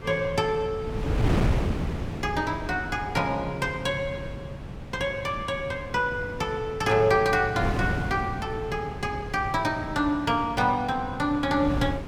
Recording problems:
wind on the microphone; below 300 Hz, SNR 7 dB

